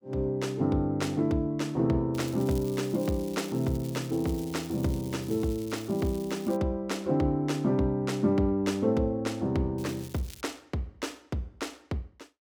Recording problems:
crackle; from 2 to 6.5 s and at 10 s; loose cable, SNR 18 dB

